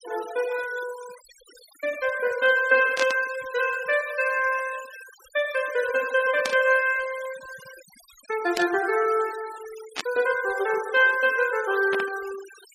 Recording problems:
noise reduction artefacts; signal-to-artefact ratio 18 dB
burst of static; 5 times, first at 3 s; peak -1 dB vs average level

